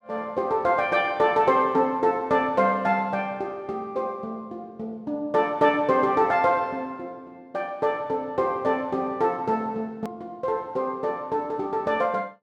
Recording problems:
hard cut with a click; at 10 s

